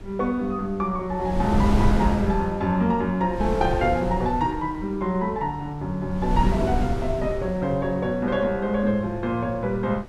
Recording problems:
wind noise; below 170 Hz, SNR 5 dB

